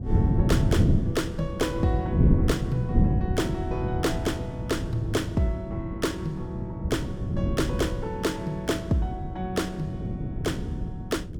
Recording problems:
wind on the microphone; below 200 Hz, SNR -1 dB

